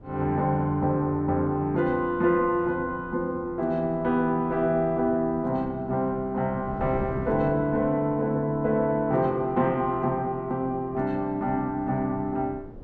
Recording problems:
wind on the microphone; below 320 Hz, SNR 18 dB

